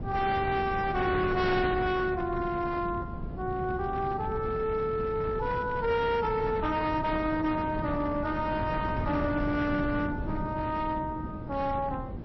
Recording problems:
codec artefacts; AAC, then MP3, log-spectral distance 2 dB, nothing above 5.7 kHz
distorted audio; hard clipping, signal-to-distortion ratio 12 dB
wind noise; below 270 Hz, SNR 7 dB

